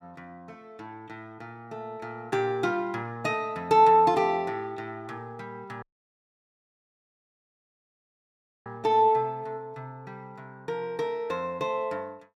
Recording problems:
dropout; at 6 s for 3 s

